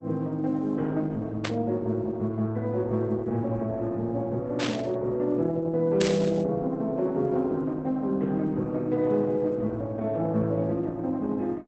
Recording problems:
lossy compression; Opus, log-spectral distance 2 dB
static burst; at 1.5 s, at 4.5 s and at 6 s; peak +1 dB vs average level

